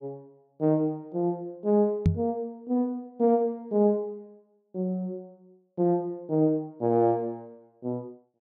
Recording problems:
microphone bump; at 2 s; peak +8 dB vs average level

